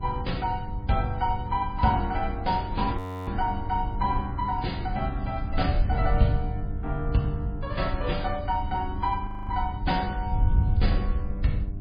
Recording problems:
lossy codec; MP3, log-spectral distance 2 dB
mains hum; 50 Hz, harmonics up to 800 Hz, SNR 12 dB
wind on the microphone; below 84 Hz, SNR 3 dB
audio freezing; at 3 s and at 9.5 s
crackling; from 4.5 to 6 s and from 10 to 11 s; loose cable, SNR 28 dB

